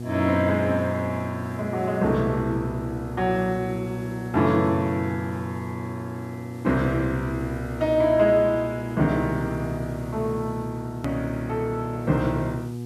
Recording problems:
mains hum; 60 Hz, harmonics up to 840 Hz, SNR 8 dB
hiss; slope +3 dB per octave, SNR 28 dB
hard cut with a click; at 11 s

